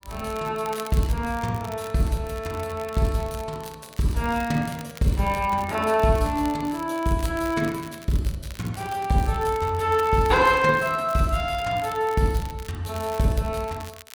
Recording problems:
crackling; vinyl, SNR 19 dB

